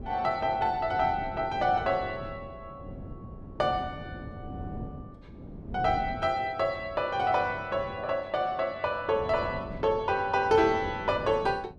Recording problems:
wind noise; below 280 Hz, SNR 14 dB

